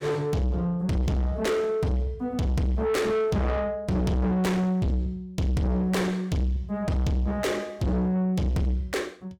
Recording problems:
distorted audio; soft clipping, signal-to-distortion ratio 6 dB

